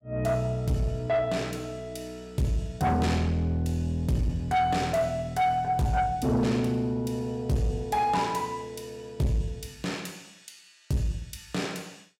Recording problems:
distorted audio; soft clipping, signal-to-distortion ratio 10 dB

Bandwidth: 16.5 kHz